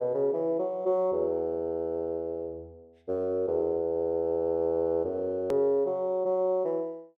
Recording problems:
click at an edit; at 5.5 s

